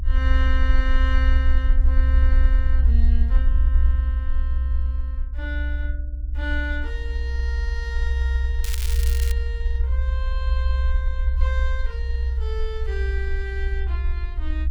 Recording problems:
low-frequency rumble; below 64 Hz, SNR -11 dB
crackling; at 8.5 s; loose cable, SNR 0 dB

